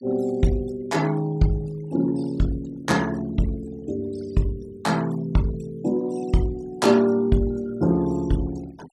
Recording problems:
denoising artefacts; signal-to-artefact ratio 22 dB

